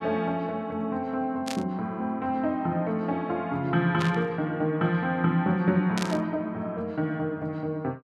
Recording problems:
static burst; at 1.5 s, at 4 s and at 6 s; peak -1 dB vs average level

